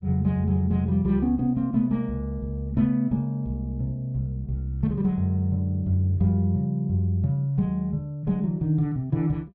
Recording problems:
none

